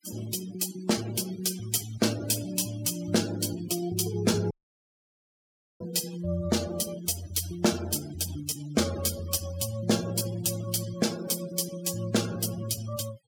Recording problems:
noise reduction artefacts; signal-to-artefact ratio 15 dB
audio cutting out; at 4.5 s for 1.5 s

